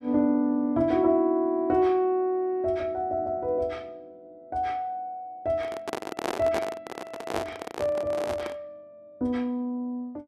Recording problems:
handling noise; from 5.5 to 8.5 s; peak +1 dB vs average level

